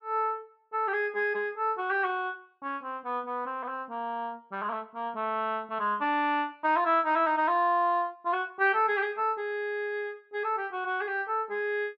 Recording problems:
none

